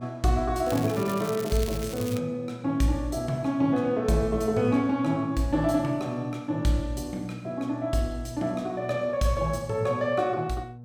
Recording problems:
hum; 60 Hz, harmonics up to 720 Hz, SNR 16 dB
crackling; from 0.5 to 2 s; loose cable, SNR 13 dB

